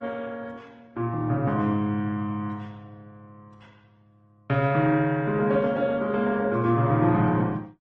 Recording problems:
lossy codec; Opus, then MP3, log-spectral distance 2 dB

